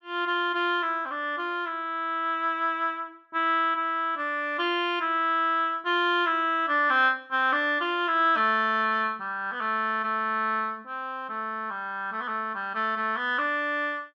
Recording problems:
none

